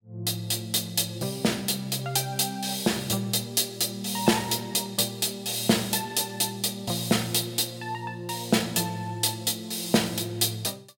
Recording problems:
none

